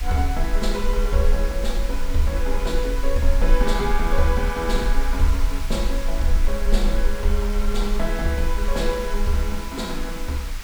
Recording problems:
hiss; SNR 10 dB
rumble; below 38 Hz, strongest tone 22 Hz, SNR 1 dB

